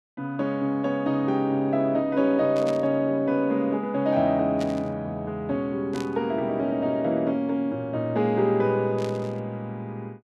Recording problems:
static burst; 4 times, first at 2.5 s; peak -9 dB vs average level

